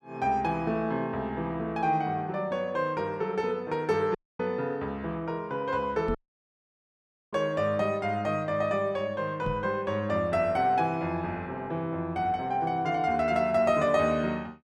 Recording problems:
dropout; at 4 s and at 6 s for 1 s
knock on the microphone; at 6 s and at 9.5 s; peak -2 dB vs average level

